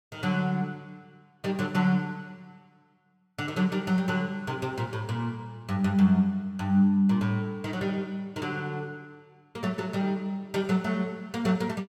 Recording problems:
none

